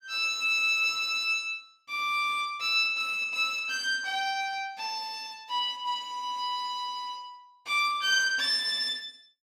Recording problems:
none

